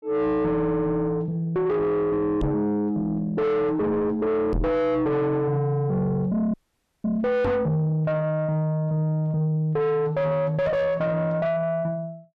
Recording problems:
distorted audio; soft clipping, signal-to-distortion ratio 6 dB
microphone bump; at 2.5 s, at 4.5 s and at 7.5 s; peak +6 dB vs average level
dropout; at 6.5 s for 0.5 s

